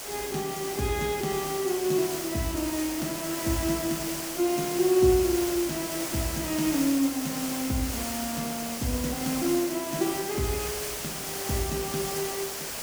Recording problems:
hiss; slope -2 dB per octave, SNR 4 dB

